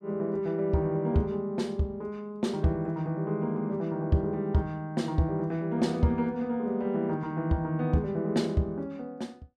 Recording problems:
none

